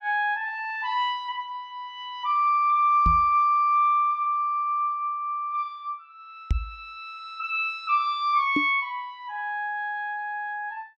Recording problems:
knock on the microphone; at 3 s, at 6.5 s and at 8.5 s; peak +3 dB vs average level

